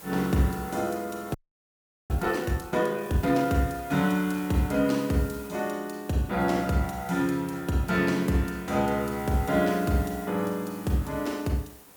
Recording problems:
background hiss; slope -4 dB per octave, SNR 19 dB
frozen audio; at 1.5 s for 1 s

